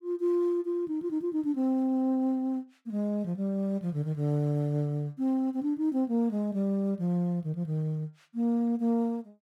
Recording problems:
none

